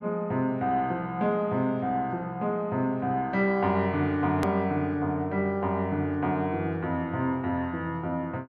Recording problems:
click at an edit; at 4.5 s

